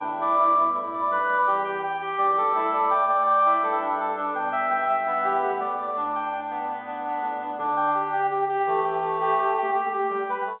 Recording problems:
telephone audio; 300 Hz to 3.9 kHz, G.711

